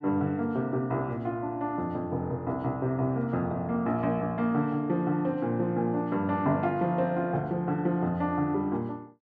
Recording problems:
none

